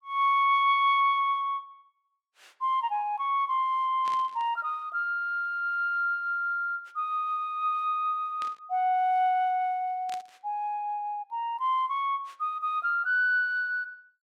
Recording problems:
burst of static; at 4 s, at 8.5 s and at 10 s; peak -10 dB vs average level

